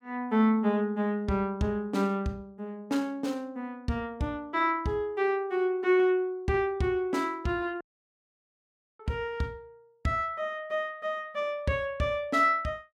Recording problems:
dropout; at 8 s for 1 s

